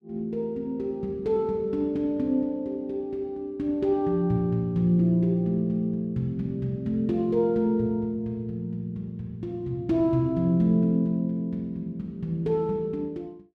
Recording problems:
none

